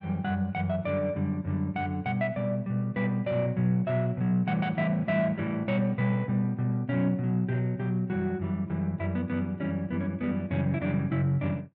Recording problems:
none

